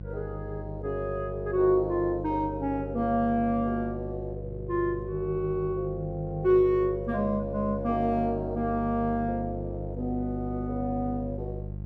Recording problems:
hum; 50 Hz, harmonics up to 500 Hz, SNR 9 dB

